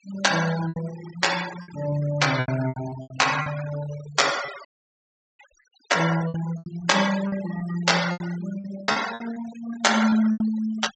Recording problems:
treble missing; nothing above 8 kHz
denoising artefacts; signal-to-artefact ratio 12 dB
lost packets; 11% of the sound replaced, filled with repeated pitch periods
dropout; at 4.5 s for 0.5 s

